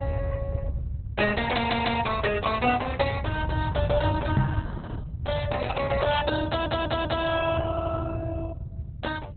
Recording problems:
codec artefacts; Opus, log-spectral distance 4 dB, nothing above 4 kHz
low-frequency rumble; below 110 Hz, SNR 3 dB
audio stuttering; at 1.5 s, at 6.5 s and at 7.5 s
knock on the microphone; at 4.5 s; peak +8 dB vs average level

